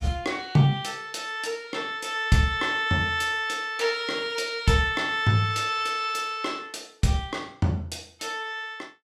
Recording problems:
none

